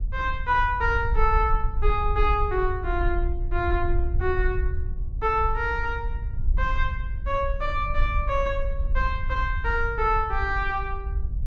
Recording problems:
wind noise; below 58 Hz, SNR 3 dB

